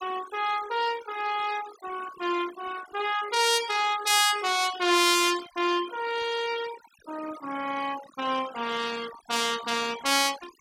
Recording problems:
noise reduction artefacts; signal-to-artefact ratio 14 dB

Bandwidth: 16.5 kHz